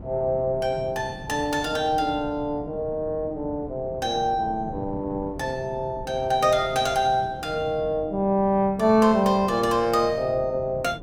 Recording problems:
wind on the microphone; below 300 Hz, SNR 16 dB

